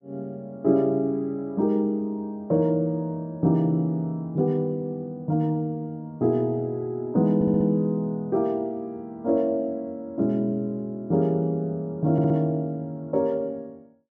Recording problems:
audio stuttering; at 7.5 s and at 12 s

